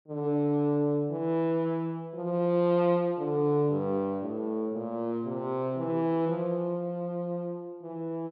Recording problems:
treble cut off; nothing above 5.5 kHz

